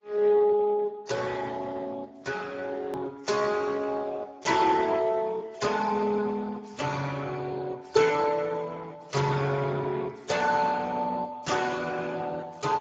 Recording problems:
lossy compression; Vorbis, then Speex, log-spectral distance 5 dB
hard cut with a click; at 3 s

